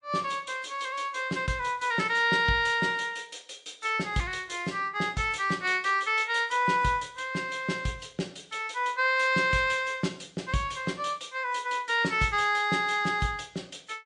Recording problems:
lossy codec; MP3, log-spectral distance 3 dB, nothing above 8.5 kHz

